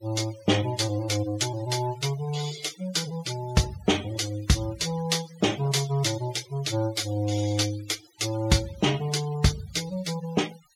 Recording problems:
denoising artefacts; signal-to-artefact ratio 16 dB

